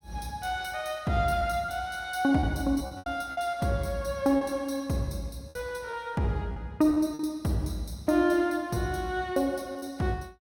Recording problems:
packet loss; 7% of the sound replaced, filled with repeated pitch periods

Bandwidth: 17 kHz